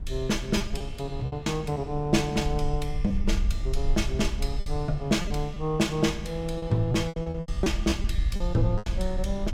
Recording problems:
low-frequency rumble; below 58 Hz, SNR 5 dB
wind noise; below 300 Hz, SNR 19 dB
packet loss; 9% of the sound replaced, filled with repeated pitch periods

